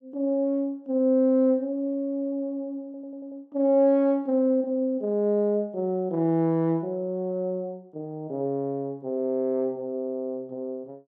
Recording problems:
stutter; at 3 s

